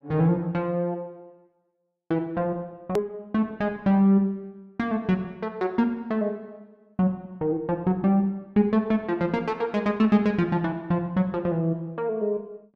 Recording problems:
hard cut with a click; at 3 s

